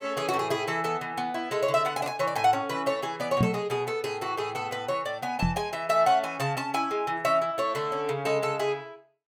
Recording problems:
microphone bump; at 3.5 s and at 5.5 s; peak +7 dB vs average level

